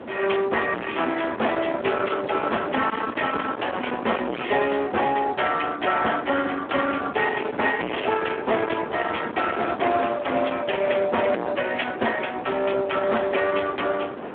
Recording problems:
phone line; 260 Hz to 3.3 kHz, Speex
distorted audio; hard clipping, uneven, signal-to-distortion ratio 3 dB
wind on the microphone; below 1.3 kHz, SNR 10 dB

